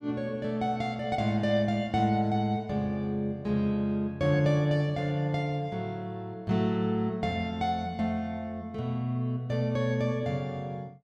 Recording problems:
none

